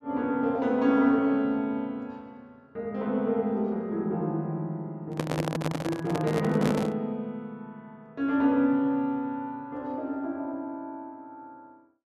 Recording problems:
microphone handling noise; from 5 to 7 s; peak +4 dB vs average level

